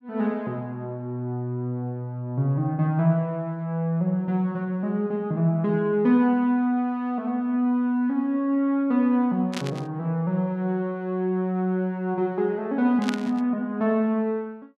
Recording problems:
static burst; at 9.5 s and at 13 s; peak -3 dB vs average level

